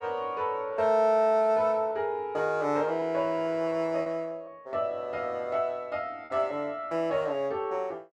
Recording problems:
lost packets; 2% of the sound replaced, filled with repeated pitch periods

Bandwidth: 12.5 kHz